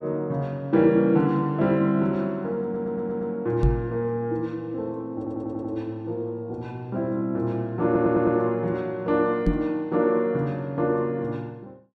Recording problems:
audio stuttering; at 2.5 s, at 5 s and at 8 s
microphone thump; at 3.5 s and at 9.5 s; peak +7 dB vs average level

